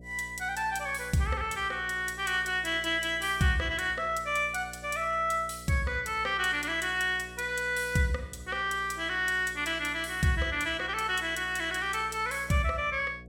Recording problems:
electrical hum; 60 Hz, harmonics up to 720 Hz, SNR 20 dB

